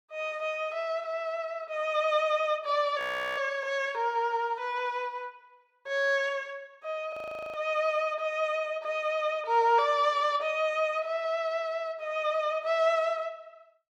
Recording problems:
audio freezing; at 3 s and at 7 s

